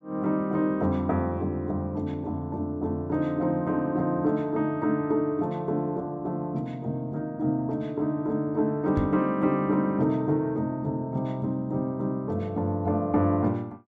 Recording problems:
knock on the microphone; at 9 s; peak +3 dB vs average level

